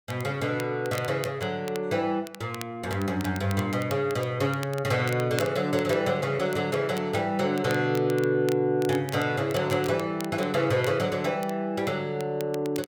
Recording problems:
crackling; vinyl, SNR 17 dB

